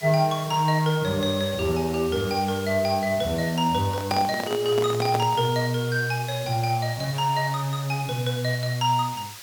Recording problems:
background hiss; slope +2 dB per octave, SNR 15 dB
handling noise; from 4 to 5.5 s; peak -1 dB vs average level

